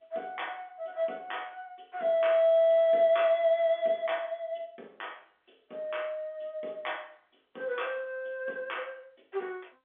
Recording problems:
telephone audio; 280 Hz to 3.7 kHz, G.711

